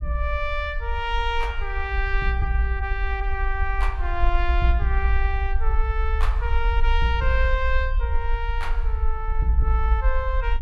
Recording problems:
low-frequency rumble; below 56 Hz, SNR 0 dB

